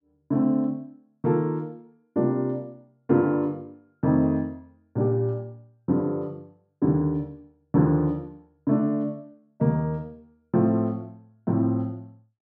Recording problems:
none

